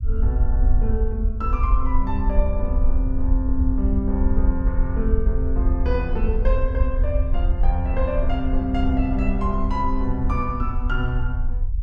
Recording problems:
low-frequency rumble; below 60 Hz, SNR -3 dB

